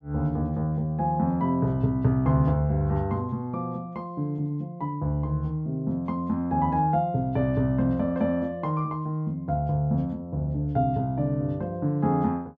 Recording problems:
none

